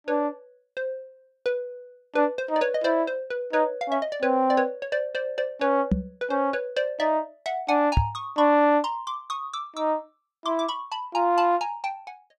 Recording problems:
knock on the microphone; at 6 s and at 8 s; peak +7 dB vs average level

